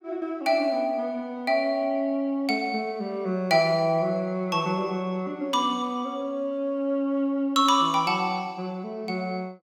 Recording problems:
none

